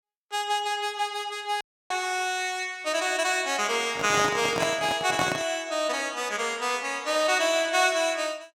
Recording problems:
dropout; at 1.5 s
microphone handling noise; from 4 to 5.5 s; peak +1 dB vs average level

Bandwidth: 16.5 kHz